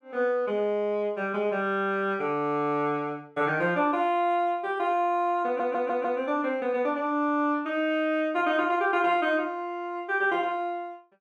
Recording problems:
audio stuttering; at 5.5 s

